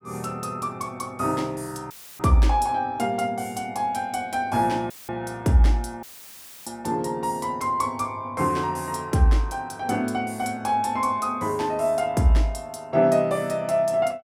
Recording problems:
dropout; at 2 s, at 5 s and at 6 s for 0.5 s; filled with static

